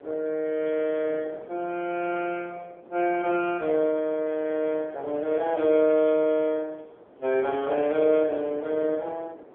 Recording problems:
phone line; 320 Hz to 3.3 kHz, AMR-NB
wind on the microphone; below 670 Hz, SNR 21 dB

